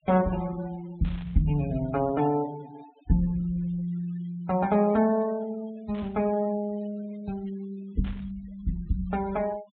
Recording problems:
treble cut off; nothing above 4 kHz
noise reduction artefacts; signal-to-artefact ratio 20 dB
burst of static; at 1 s, at 6 s and at 8 s; peak -14 dB vs average level

